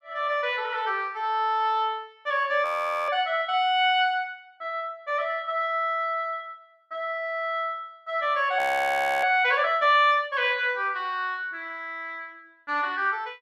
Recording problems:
audio freezing; at 2.5 s and at 8.5 s for 0.5 s

